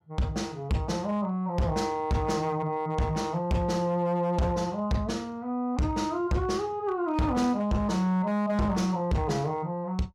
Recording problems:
distortion; hard clipping, uneven, signal-to-distortion ratio 10 dB

